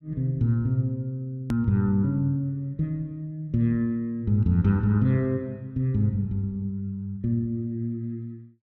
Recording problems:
click at an edit; at 1.5 s

